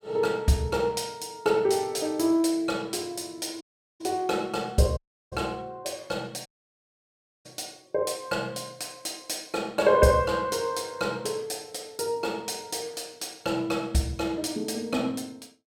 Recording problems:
audio cutting out; at 3.5 s, at 5 s and at 6.5 s for 1 s

